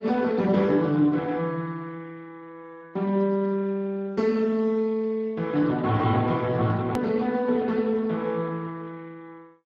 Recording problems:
lossy codec; Speex, log-spectral distance 3 dB, nothing above 13.1 kHz
click at an edit; at 7 s

